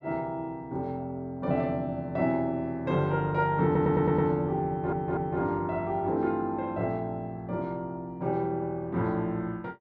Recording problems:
stutter; at 3.5 s and at 4.5 s

